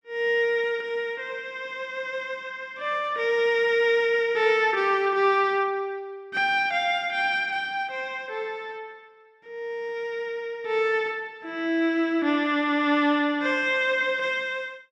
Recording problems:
none

